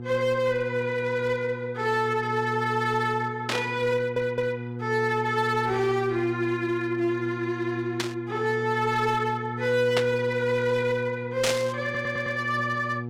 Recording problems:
distorted audio; hard clipping, uneven, signal-to-distortion ratio 11 dB
electrical hum; 60 Hz, harmonics up to 840 Hz, SNR 9 dB
burst of static; 4 times, first at 3.5 s; peak +4 dB vs average level
stutter; at 4 s and at 12 s

